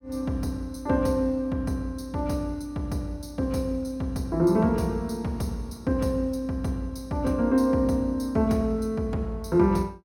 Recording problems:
none

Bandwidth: 16.5 kHz